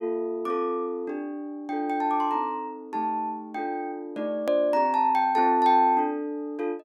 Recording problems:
edit click; at 4.5 s

